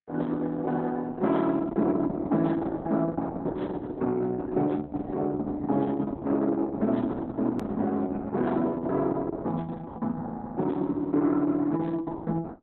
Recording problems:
lossy compression; Opus, log-spectral distance 3 dB, nothing above 13.1 kHz
edit click; at 7.5 s

